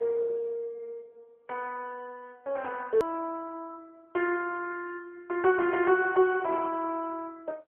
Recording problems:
phone line; 340 Hz to 3 kHz, AMR-NB
click at an edit; at 3 s

